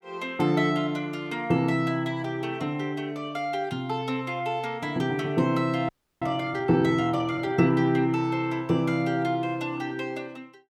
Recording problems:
frozen audio; at 6 s

